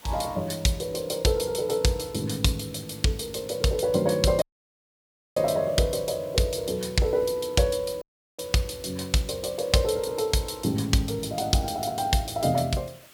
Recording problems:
background hiss; slope -1 dB per octave, SNR 24 dB
dropout; at 4.5 s for 1 s and at 8 s

